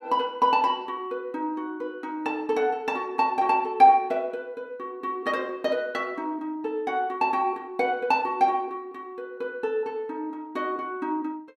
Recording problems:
none

